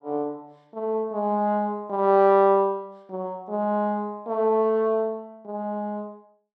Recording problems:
none

